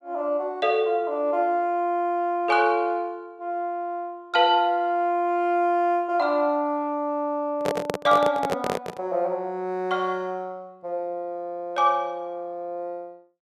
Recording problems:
microphone handling noise; from 7.5 to 9 s; peak +2 dB vs average level

